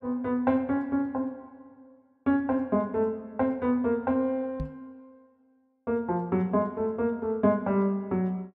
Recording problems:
microphone thump; at 4.5 s; peak -3 dB vs average level

